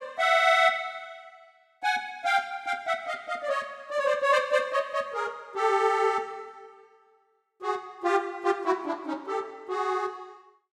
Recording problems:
none

